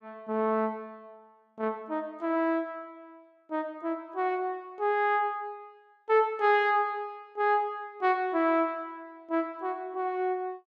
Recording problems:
none

